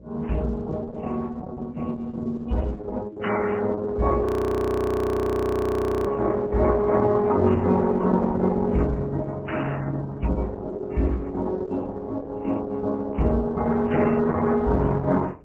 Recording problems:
lossy compression; MP3, then Opus, log-spectral distance 3 dB, nothing above 19.5 kHz
hum; 60 Hz, harmonics up to 600 Hz, SNR 25 dB
audio freezing; at 4.5 s for 2 s

